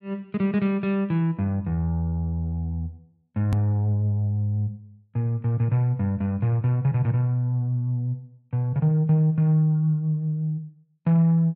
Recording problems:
click at an edit; at 3.5 s

